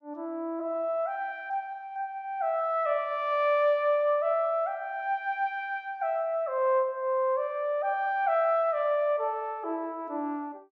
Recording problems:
none

